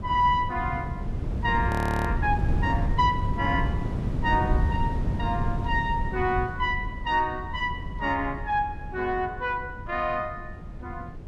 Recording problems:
wind noise; below 160 Hz, SNR 3 dB
audio freezing; at 1.5 s

